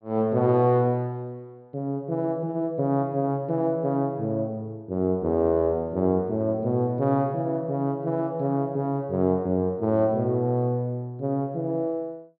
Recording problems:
low-pass filter; nothing above 5.5 kHz

